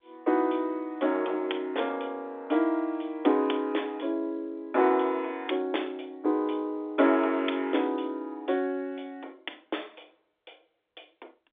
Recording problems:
telephone audio; 260 Hz to 3.6 kHz, G.711

